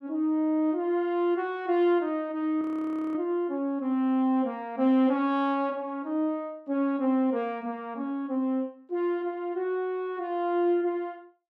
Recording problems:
audio freezing; at 2.5 s for 0.5 s

